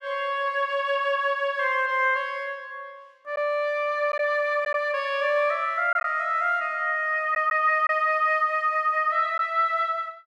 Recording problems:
lost packets; 1.4% of the sound replaced, filled with silence

